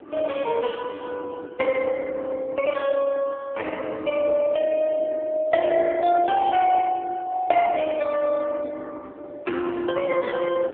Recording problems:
telephone audio; 280 Hz to 3.1 kHz, AMR-NB
wind noise; below 480 Hz, SNR 19 dB

